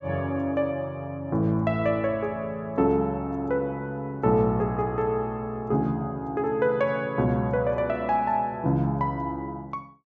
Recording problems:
treble missing; nothing above 8 kHz

